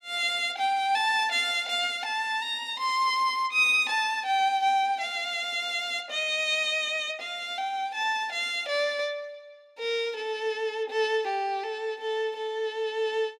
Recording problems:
none

